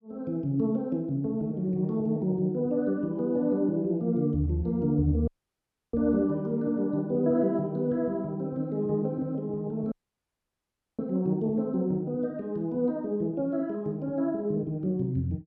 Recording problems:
dropout; at 5.5 s for 0.5 s and at 10 s for 1 s

